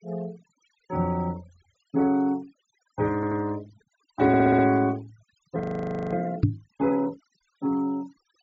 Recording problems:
treble cut off; nothing above 8 kHz
noise reduction artefacts; signal-to-artefact ratio 25 dB
stutter; at 3 s and at 4.5 s
audio freezing; at 5.5 s for 0.5 s
microphone bump; at 6.5 s; peak +9 dB vs average level

